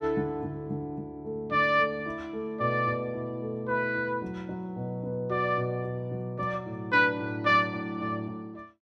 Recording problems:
none

